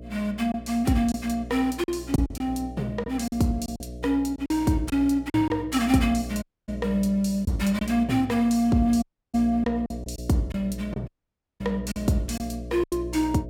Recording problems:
electrical hum; 60 Hz, harmonics up to 660 Hz, SNR 13 dB
lost packets; 6% of the sound replaced, filled with silence
audio cutting out; at 6.5 s, at 9 s and at 11 s for 0.5 s

